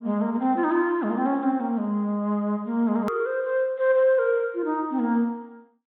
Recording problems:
treble cut off; nothing above 4 kHz
edit click; at 3 s

